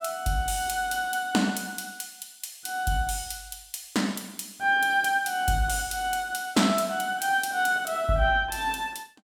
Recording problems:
none

